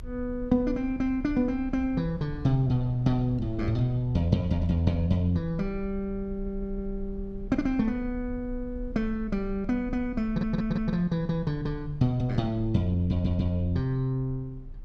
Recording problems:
low-frequency rumble; below 60 Hz, strongest tone 32 Hz, SNR 14 dB
audio stuttering; at 6.5 s, at 10 s and at 13 s

